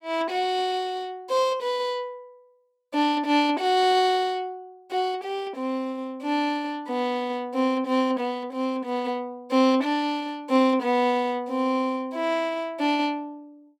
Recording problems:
none

